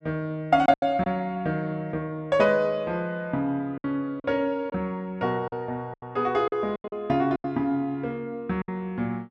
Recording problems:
lost packets; 7% of the sound replaced, filled with silence

